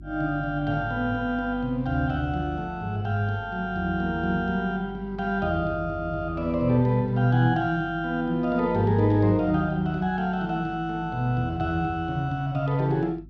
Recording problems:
hum; 50 Hz, harmonics up to 350 Hz, SNR 18 dB

